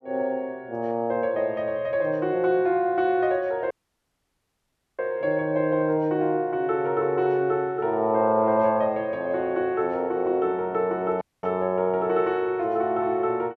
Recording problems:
audio cutting out; at 3.5 s for 1.5 s and at 11 s

